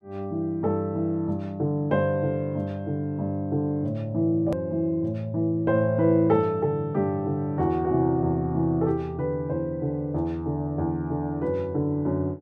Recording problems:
hard cut with a click; at 4.5 s

